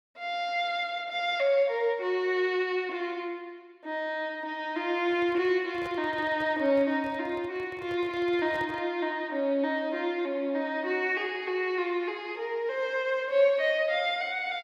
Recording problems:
handling noise; from 5 to 9 s; peak -10 dB vs average level

